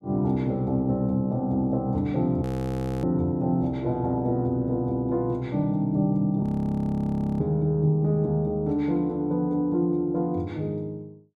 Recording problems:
frozen audio; at 2.5 s for 0.5 s and at 6.5 s for 1 s

